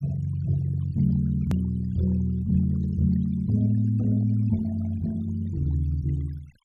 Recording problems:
denoising artefacts; signal-to-artefact ratio 23 dB
edit click; at 1.5 s

